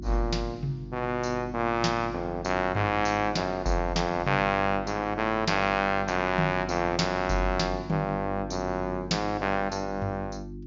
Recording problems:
treble missing; nothing above 7.4 kHz
hum; 50 Hz, harmonics up to 350 Hz, SNR 12 dB

